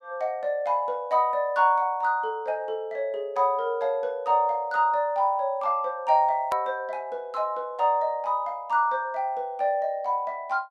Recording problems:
click at an edit; at 6.5 s

